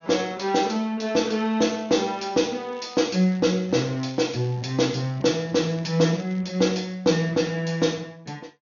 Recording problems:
low-pass filter; nothing above 6.6 kHz
crackling; from 1.5 to 6.5 s; loose cable, SNR 27 dB

